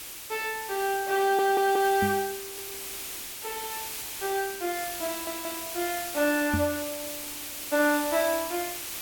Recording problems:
hiss; SNR 7 dB
audio stuttering; at 1 s, at 2.5 s and at 5 s
knock on the microphone; at 2 s and at 6.5 s; peak +2 dB vs average level

